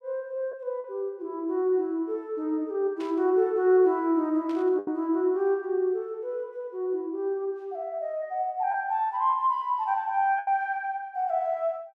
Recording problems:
lost packets; 1.9% of the sound replaced, filled with the last packet
burst of static; at 3 s and at 4.5 s; peak -14 dB vs average level

